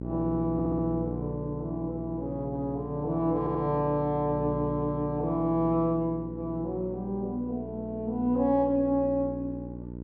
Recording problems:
hum; 60 Hz, harmonics up to 600 Hz, SNR 9 dB
stutter; at 0.5 s and at 3.5 s

